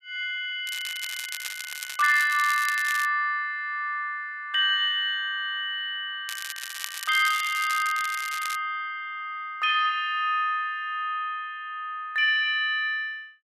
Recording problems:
crackle; from 0.5 to 3 s and from 6.5 to 8.5 s; loose cable, SNR 10 dB

